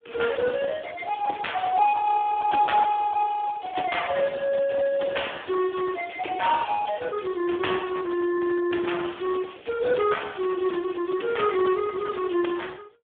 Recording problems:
telephone audio; 240 Hz to 3.5 kHz, Speex

